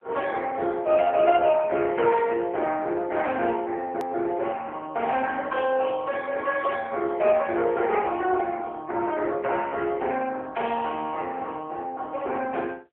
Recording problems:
phone line; 300 Hz to 3.4 kHz, AMR-NB
hard cut with a click; at 4 s

